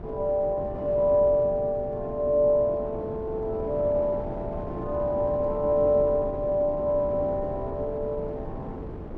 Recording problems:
wind noise; below 410 Hz, SNR 11 dB

